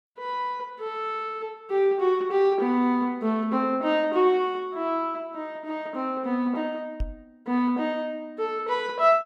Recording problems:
microphone thump; at 7 s; peak -1 dB vs average level

